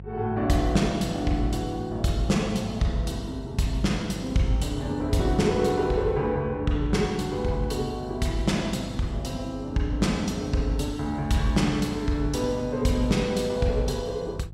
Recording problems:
hum; 50 Hz, harmonics up to 550 Hz, SNR 15 dB

